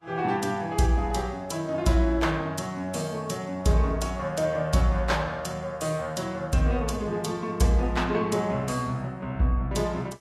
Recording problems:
codec artefacts; Vorbis, log-spectral distance 3 dB, nothing above 13.1 kHz

